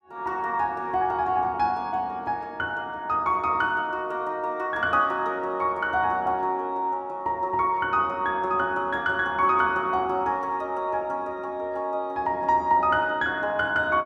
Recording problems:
none

